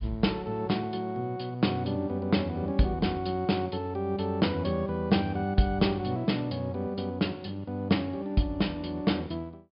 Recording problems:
treble cut off; nothing above 5.1 kHz

